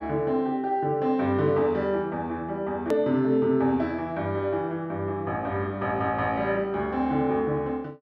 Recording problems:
hard cut with a click; at 3 s

